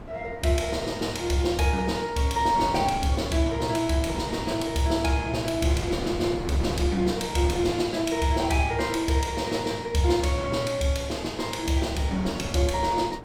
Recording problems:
wind noise; below 500 Hz, SNR 12 dB

